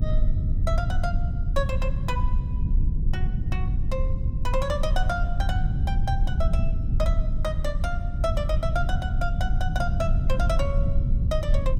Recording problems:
low-frequency rumble; below 82 Hz, SNR -6 dB

